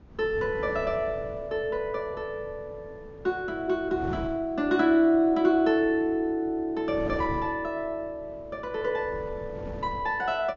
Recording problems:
treble missing; nothing above 7 kHz
wind noise; below 320 Hz, SNR 16 dB

